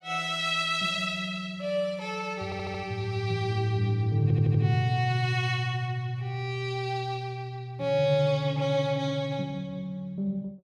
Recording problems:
audio stuttering; at 2.5 s and at 4 s

